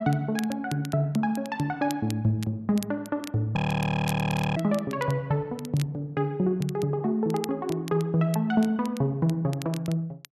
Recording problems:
crackle; vinyl, SNR 18 dB
audio freezing; at 3.5 s for 1 s

